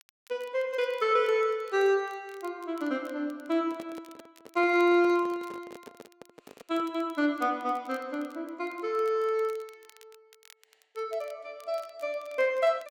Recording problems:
crackle; vinyl, SNR 29 dB
microphone handling noise; from 3.5 to 7 s; peak -12 dB vs average level

